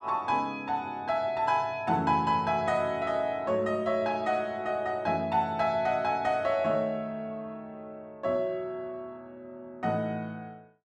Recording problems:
none

